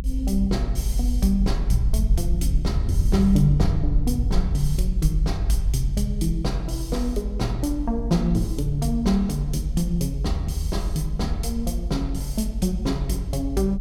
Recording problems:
low-frequency rumble; below 56 Hz, SNR 2 dB

